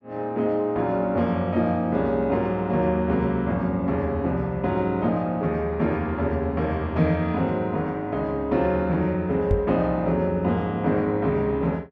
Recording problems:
knock on the microphone; at 9.5 s; peak +3 dB vs average level

